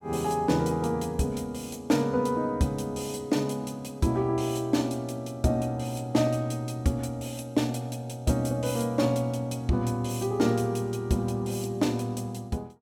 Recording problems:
none

